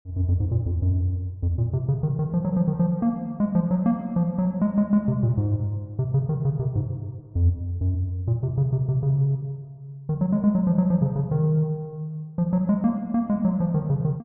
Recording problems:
none

